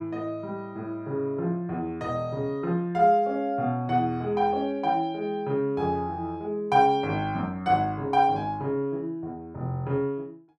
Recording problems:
none

